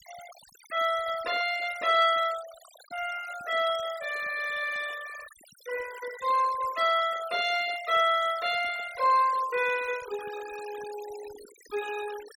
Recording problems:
denoising artefacts; signal-to-artefact ratio 16 dB

